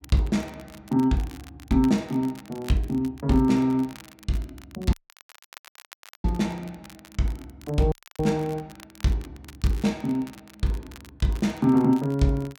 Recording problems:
crackling; vinyl, SNR 23 dB
dropout; at 5 s for 1.5 s and at 8 s

